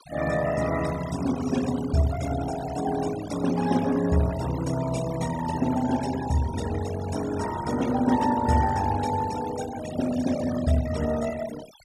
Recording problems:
denoising artefacts; signal-to-artefact ratio 12 dB

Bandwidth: 14 kHz